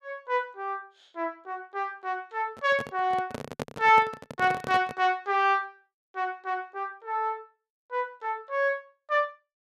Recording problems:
microphone handling noise; from 2.5 to 5 s; peak -2 dB vs average level

